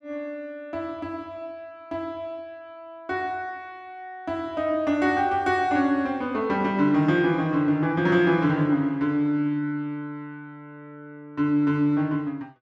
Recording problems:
none

